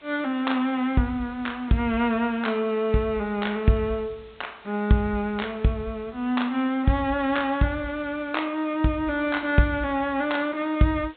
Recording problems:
low-pass filter; nothing above 4 kHz
hiss; SNR 28 dB

